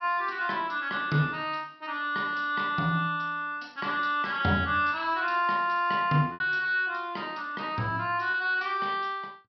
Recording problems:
treble cut off; nothing above 5.5 kHz
lost packets; 1.1% of the sound replaced, filled with repeated pitch periods

